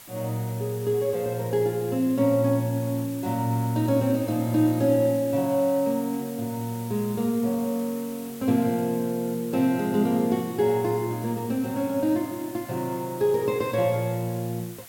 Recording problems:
background hiss; slope 0 dB per octave, SNR 17 dB

